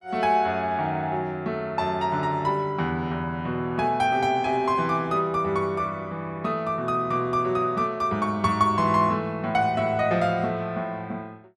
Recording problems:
none

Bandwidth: 14 kHz